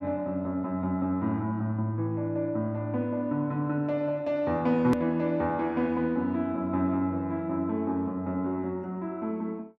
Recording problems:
hard cut with a click; at 5 s

